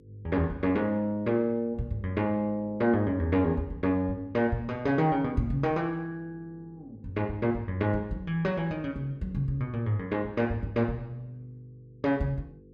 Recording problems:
hum; 50 Hz, harmonics up to 500 Hz, SNR 26 dB

